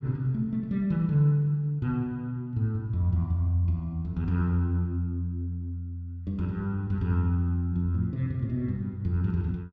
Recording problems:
none

